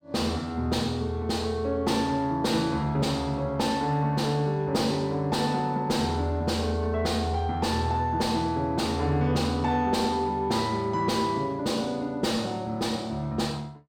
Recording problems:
distorted audio; soft clipping, signal-to-distortion ratio 11 dB

